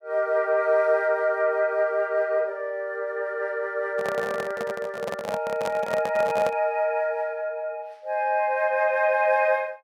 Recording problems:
microphone handling noise; from 4 to 6.5 s; peak -2 dB vs average level

